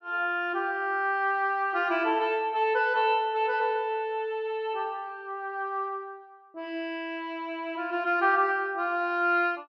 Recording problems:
none

